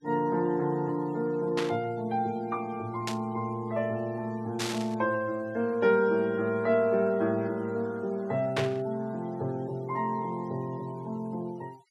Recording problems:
noise reduction artefacts; signal-to-artefact ratio 26 dB
burst of static; 4 times, first at 1.5 s; peak +2 dB vs average level

